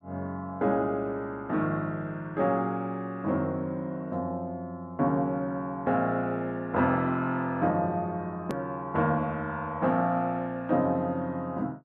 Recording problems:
edit click; at 8.5 s

